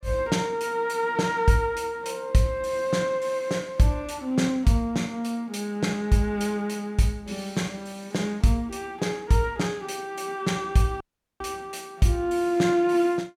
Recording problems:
dropout; at 11 s

